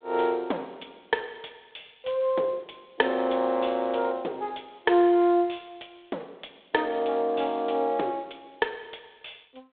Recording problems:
phone line; 280 Hz to 3.7 kHz, G.726

